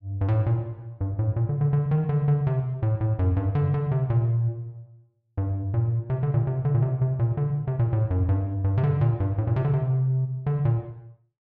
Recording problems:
none

